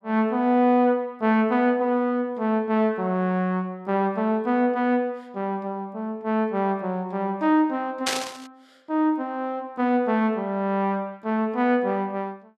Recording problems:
static burst; at 8 s; peak +3 dB vs average level

